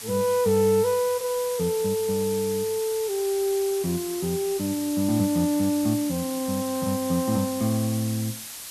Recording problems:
background hiss; slope +2 dB per octave, SNR 10 dB

